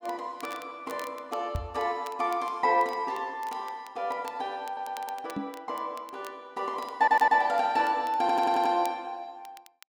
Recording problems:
crackling; vinyl, SNR 23 dB
microphone thump; at 1.5 s and at 5.5 s; peak 0 dB vs average level
audio stuttering; at 4.5 s, at 7 s and at 8 s

